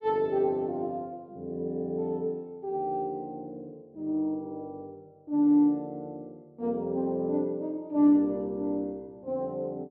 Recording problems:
none

